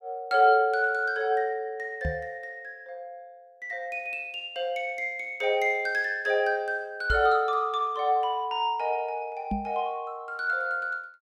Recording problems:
microphone thump; at 2 s, at 7 s and at 9.5 s; peak 0 dB vs average level

